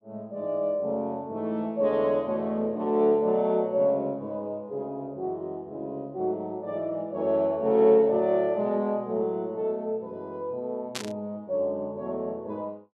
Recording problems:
burst of static; at 11 s; peak 0 dB vs average level

